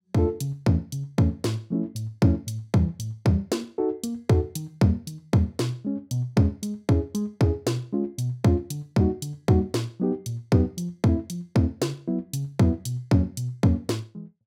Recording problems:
none

